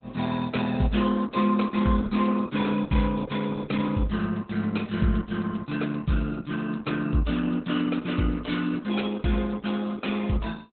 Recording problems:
lossy compression; Opus, log-spectral distance 5 dB, nothing above 4 kHz

